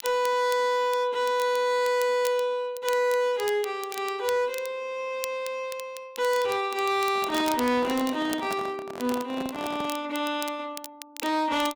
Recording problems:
distorted audio; hard clipping, signal-to-distortion ratio 11 dB
crackling; vinyl, SNR 15 dB
microphone handling noise; from 7 to 10 s; peak -5 dB vs average level

